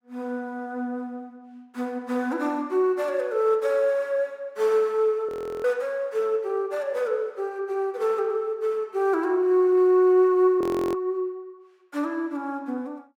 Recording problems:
audio freezing; at 5.5 s and at 11 s

